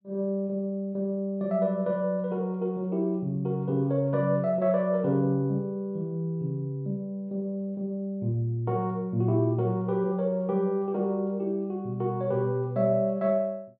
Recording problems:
none

